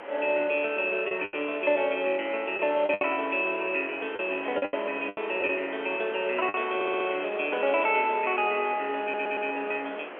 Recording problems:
telephone audio; 320 Hz to 3.2 kHz, G.711
hiss; SNR 13 dB
wind on the microphone; below 1.1 kHz, SNR 24 dB
packet loss; 6% of the sound replaced, filled with the last packet
stutter; at 7 s and at 9 s

